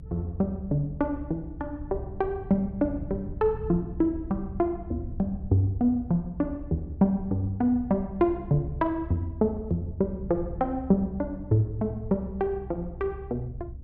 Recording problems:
low-frequency rumble; below 100 Hz, SNR 12 dB

